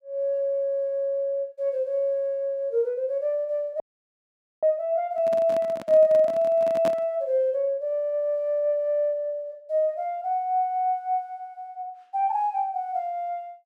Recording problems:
audio freezing; at 4 s for 1 s
handling noise; from 5 to 7 s; peak -3 dB vs average level

